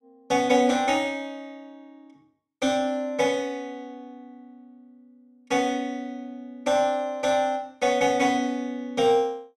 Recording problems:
none

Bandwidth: 14.5 kHz